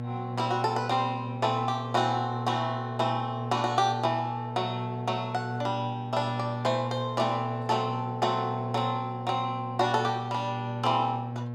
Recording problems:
hum; 60 Hz, harmonics up to 1.1 kHz, SNR 6 dB

